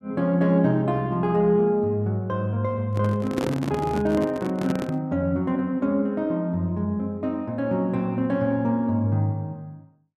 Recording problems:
microphone handling noise; from 3 to 5 s; peak +1 dB vs average level

